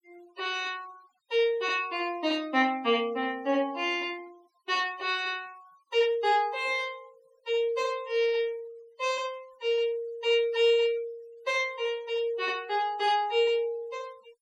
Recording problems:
denoising artefacts; signal-to-artefact ratio 25 dB

